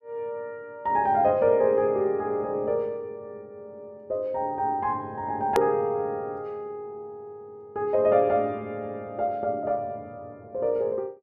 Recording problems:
hard cut with a click; at 5.5 s

